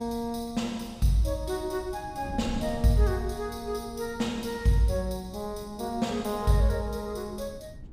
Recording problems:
wind noise; below 170 Hz, SNR 16 dB

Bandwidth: 15.5 kHz